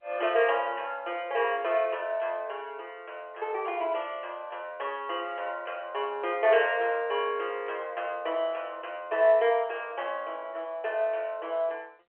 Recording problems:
phone line; 370 Hz to 3.3 kHz, G.711

